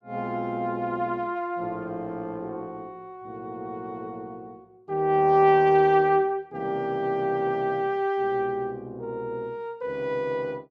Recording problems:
none

